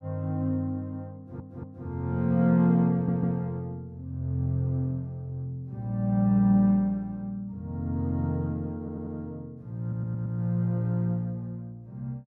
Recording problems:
stutter; 4 times, first at 1 s

